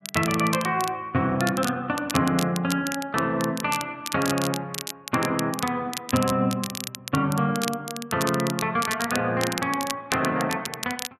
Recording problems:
crackling; vinyl, SNR 8 dB

